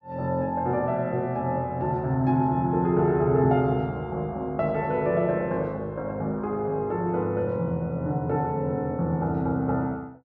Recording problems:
none

